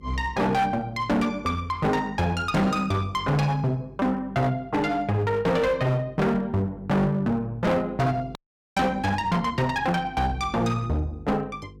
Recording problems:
distortion; hard clipping, uneven, signal-to-distortion ratio 6 dB
hum; 50 Hz, harmonics up to 500 Hz, SNR 20 dB
frozen audio; at 8.5 s

